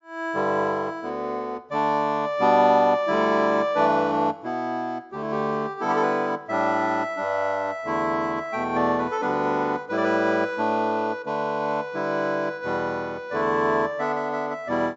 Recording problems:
low-pass filter; nothing above 7.4 kHz

